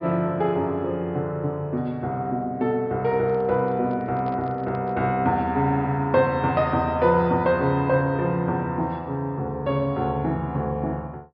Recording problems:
treble cut off; nothing above 5.5 kHz
microphone handling noise; from 3 to 5 s; peak -12 dB vs average level

